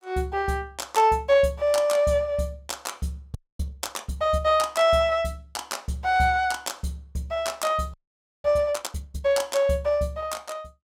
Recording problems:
audio freezing; at 3.5 s and at 8 s

